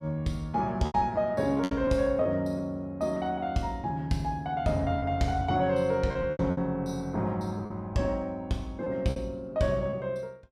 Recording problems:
lost packets; 7% of the sound replaced, filled with repeated pitch periods

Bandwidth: 15.5 kHz